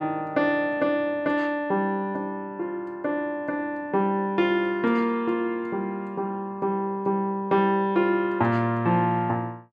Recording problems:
none

